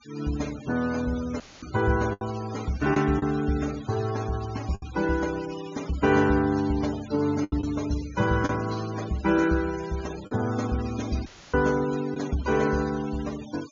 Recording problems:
low-pass filter; nothing above 7.1 kHz
noise reduction artefacts; signal-to-artefact ratio 17 dB
packet loss; 3% of the sound replaced, filled with the last packet
dropout; at 1.5 s and at 11 s; filled with static

